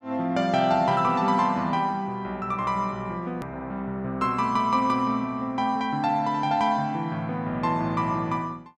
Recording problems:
hard cut with a click; at 3.5 s

